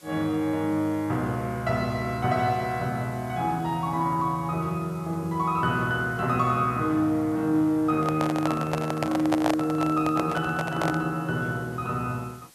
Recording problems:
background hiss; slope 0 dB per octave, SNR 26 dB
handling noise; from 8 to 11 s; peak +4 dB vs average level

